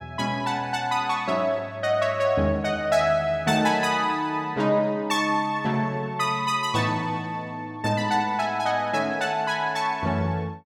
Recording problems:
none

